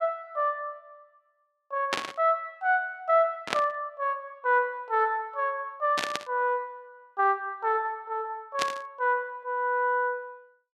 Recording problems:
burst of static; 4 times, first at 2 s; peak +5 dB vs average level

